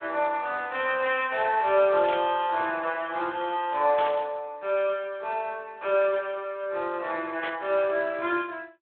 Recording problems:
phone line; 280 Hz to 3.5 kHz, Speex
burst of static; at 2 s, at 4 s and at 7.5 s; peak -5 dB vs average level

